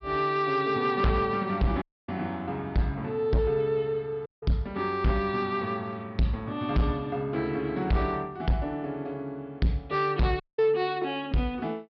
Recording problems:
treble cut off; nothing above 5.5 kHz
distorted audio; hard clipping, signal-to-distortion ratio 10 dB
audio cutting out; at 2 s, at 4.5 s and at 10 s

